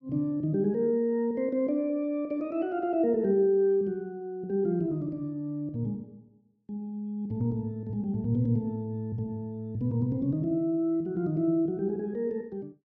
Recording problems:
none

